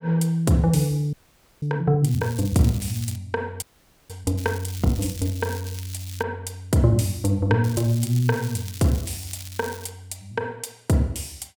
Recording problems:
audio freezing; at 1 s and at 3.5 s
crackle; from 2 to 3 s, from 4.5 to 6 s and from 7.5 to 10 s; loose cable, SNR 15 dB

